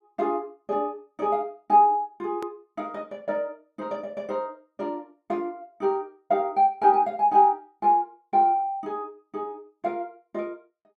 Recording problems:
hard cut with a click; at 2.5 s

